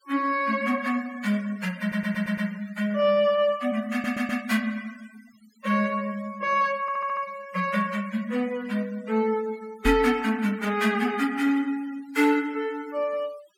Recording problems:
denoising artefacts; signal-to-artefact ratio 21 dB
stutter; at 2 s, at 4 s and at 7 s
microphone thump; at 10 s; peak +2 dB vs average level

